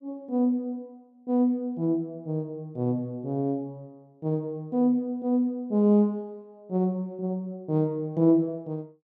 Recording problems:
none

